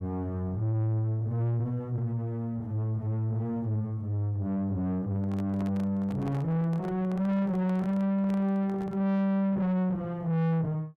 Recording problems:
distorted audio; soft clipping, signal-to-distortion ratio 6 dB
handling noise; from 5 to 9 s; peak -5 dB vs average level

